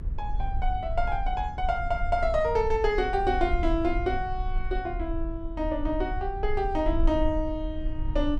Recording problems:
rumble; below 52 Hz, strongest tone 20 Hz, SNR 5 dB

